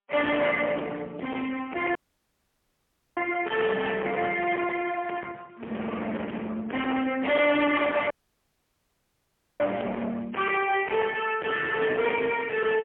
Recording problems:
telephone audio; 300 Hz to 3.2 kHz, AMR-NB, then MP3
distorted audio; hard clipping, signal-to-distortion ratio 8 dB
dropout; at 2 s for 1 s and at 8 s for 1.5 s

